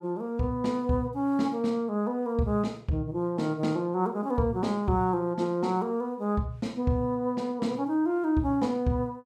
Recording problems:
none

